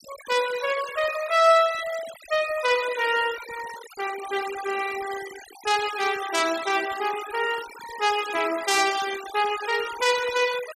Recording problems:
noise reduction artefacts; signal-to-artefact ratio 12 dB

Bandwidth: 15 kHz